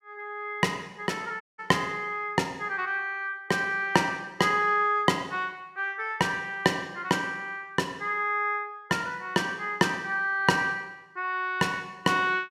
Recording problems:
dropout; at 1.5 s

